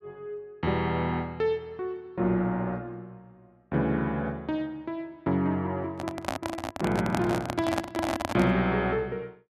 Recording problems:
microphone handling noise; from 6 to 8.5 s; peak +4 dB vs average level

